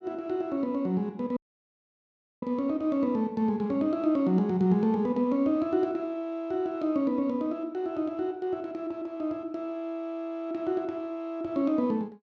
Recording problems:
audio cutting out; at 1.5 s for 1 s

